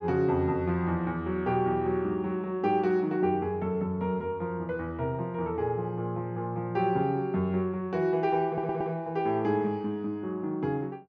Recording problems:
stutter; at 8.5 s

